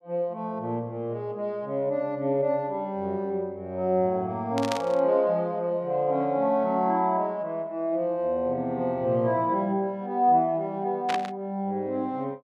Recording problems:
static burst; at 4.5 s and at 11 s; peak -1 dB vs average level

